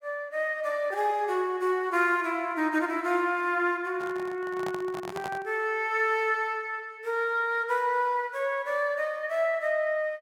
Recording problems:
microphone handling noise; from 4 to 5.5 s; peak -5 dB vs average level

